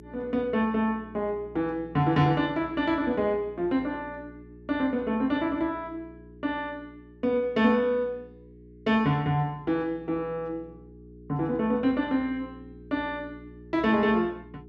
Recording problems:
hum; 60 Hz, harmonics up to 420 Hz, SNR 21 dB

